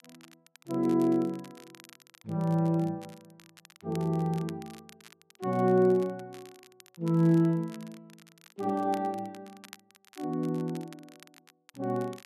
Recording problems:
crackle; vinyl, SNR 25 dB

